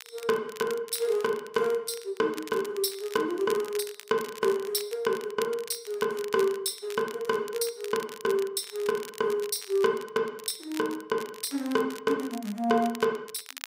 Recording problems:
crackling; vinyl, SNR 16 dB

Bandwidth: 15.5 kHz